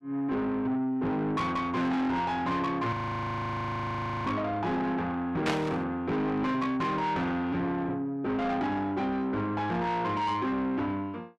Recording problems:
distortion; soft clipping, signal-to-distortion ratio 8 dB
frozen audio; at 3 s for 1.5 s
static burst; at 5.5 s; peak +2 dB vs average level

